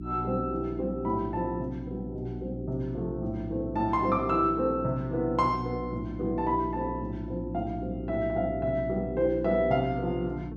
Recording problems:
hum; 60 Hz, harmonics up to 360 Hz, SNR 8 dB

